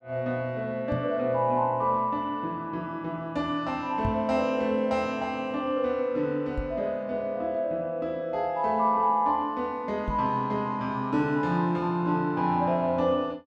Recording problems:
knock on the microphone; 4 times, first at 1 s; peak 0 dB vs average level

